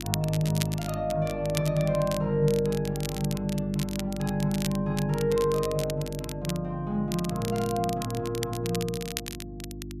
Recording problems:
hum; 50 Hz, harmonics up to 350 Hz, SNR 11 dB
crackle; vinyl, SNR 11 dB

